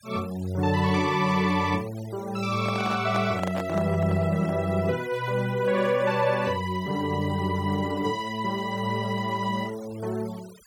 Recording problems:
denoising artefacts; signal-to-artefact ratio 20 dB
microphone handling noise; from 2.5 to 4.5 s; peak -2 dB vs average level

